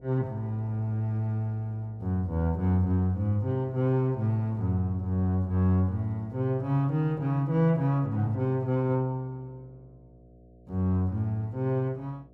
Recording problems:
electrical hum; 60 Hz, harmonics up to 720 Hz, SNR 27 dB

